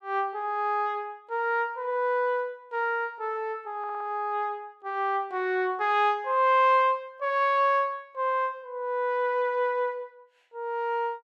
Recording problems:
stutter; at 4 s

